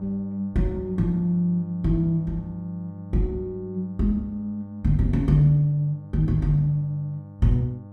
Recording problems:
hum; 50 Hz, harmonics up to 1.2 kHz, SNR 17 dB

